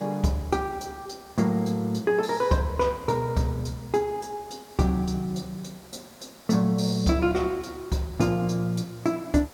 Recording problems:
background hiss; SNR 23 dB

